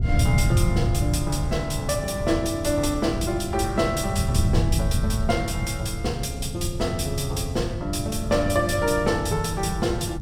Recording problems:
wind on the microphone; below 130 Hz, SNR 2 dB

